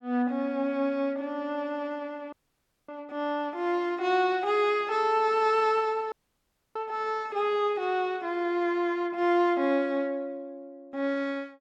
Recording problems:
audio cutting out; at 2.5 s for 0.5 s and at 6 s for 0.5 s

